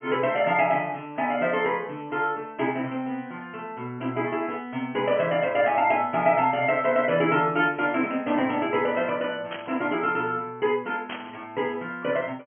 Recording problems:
low-pass filter; nothing above 3.3 kHz
static burst; at 9.5 s and at 11 s; peak -6 dB vs average level

